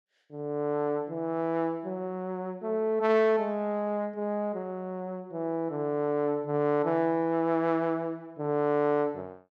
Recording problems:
none

